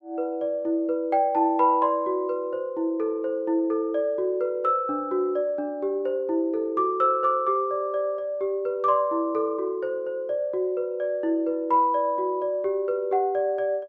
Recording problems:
none

